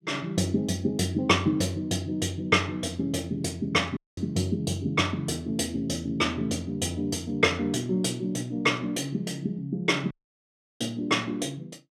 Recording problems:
dropout; at 4 s and at 10 s for 0.5 s

